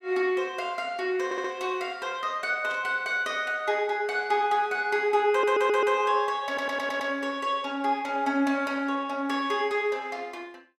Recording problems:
audio stuttering; at 1.5 s, at 5.5 s and at 6.5 s
burst of static; at 2.5 s; peak -14 dB vs average level

